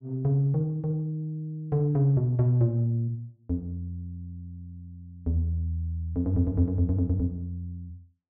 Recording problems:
none

